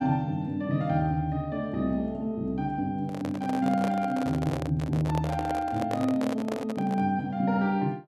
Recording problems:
microphone handling noise; from 3 to 7 s; peak -1 dB vs average level

